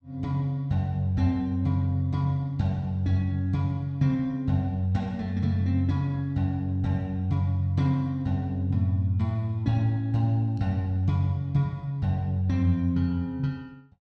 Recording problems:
none

